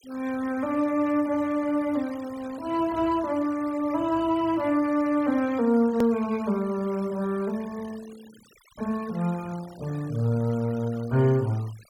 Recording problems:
denoising artefacts; signal-to-artefact ratio 22 dB
hard cut with a click; at 6 s

